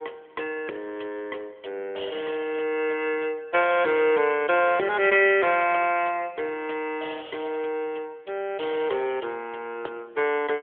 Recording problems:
telephone audio; 320 Hz to 3.4 kHz, AMR-NB

